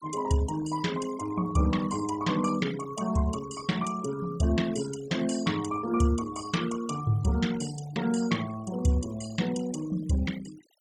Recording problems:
denoising artefacts; signal-to-artefact ratio 15 dB

